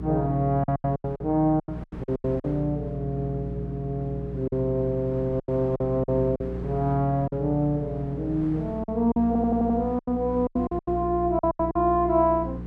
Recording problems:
electrical hum; 60 Hz, harmonics up to 480 Hz, SNR 10 dB
wind on the microphone; below 710 Hz, SNR 22 dB
lost packets; 11% of the sound replaced, filled with silence
audio stuttering; at 9.5 s

